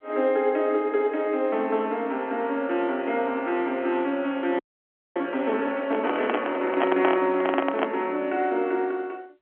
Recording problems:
phone line; 260 Hz to 3.3 kHz, G.711
frozen audio; at 4.5 s for 0.5 s
microphone handling noise; from 6 to 8 s; peak +5 dB vs average level

